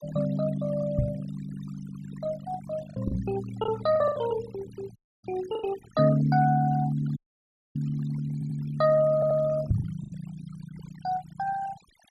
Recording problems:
denoising artefacts; signal-to-artefact ratio 17 dB
lost packets; 4% of the sound replaced, filled with the last packet
microphone bump; at 1 s, at 3 s and at 9.5 s; peak +7 dB vs average level
audio cutting out; at 5 s and at 7 s for 0.5 s
stutter; at 8.5 s and at 9 s

